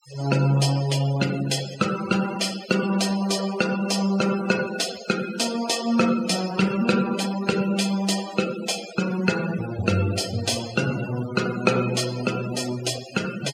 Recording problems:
noise reduction artefacts; signal-to-artefact ratio 13 dB

